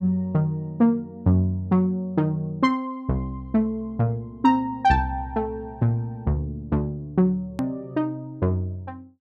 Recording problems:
hard cut with a click; at 7.5 s

